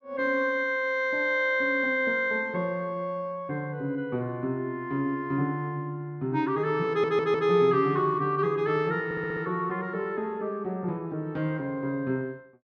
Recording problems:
audio stuttering; at 7 s and at 9 s

